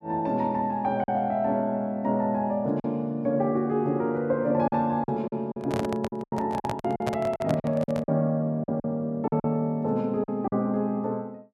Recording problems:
packet loss; 8% of the sound replaced, filled with silence
microphone handling noise; from 5.5 to 8 s; peak +1 dB vs average level

